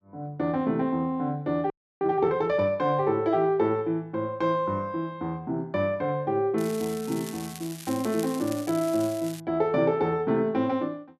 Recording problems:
frozen audio; at 1.5 s
crackling; from 6.5 to 9.5 s; loose cable, SNR 15 dB

